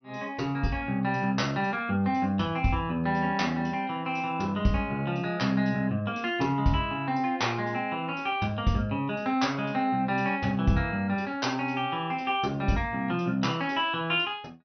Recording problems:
low-pass filter; nothing above 6 kHz

